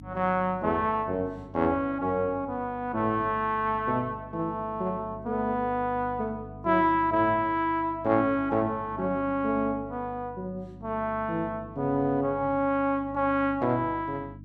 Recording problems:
mains hum; 50 Hz, harmonics up to 300 Hz, SNR 18 dB

